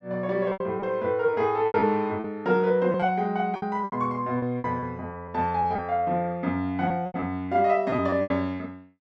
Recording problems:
lost packets; 11% of the sound replaced, filled with repeated pitch periods

